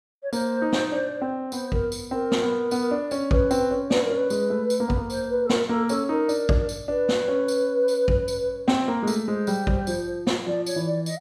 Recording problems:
none

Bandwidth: 15.5 kHz